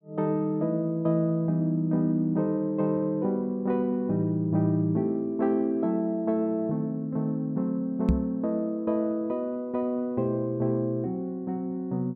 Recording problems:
microphone thump; at 8 s; peak +6 dB vs average level

